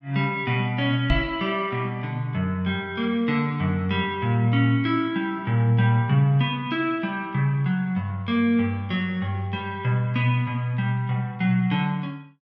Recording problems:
knock on the microphone; at 1 s; peak +3 dB vs average level

